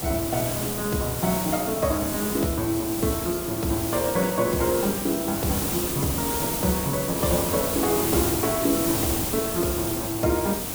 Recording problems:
hiss; SNR 1 dB

